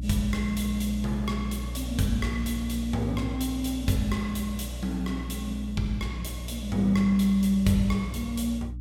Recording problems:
hum; 60 Hz, harmonics up to 300 Hz, SNR 8 dB

